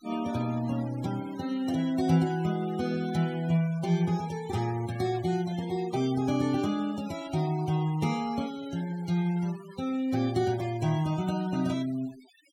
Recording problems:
denoising artefacts; signal-to-artefact ratio 19 dB

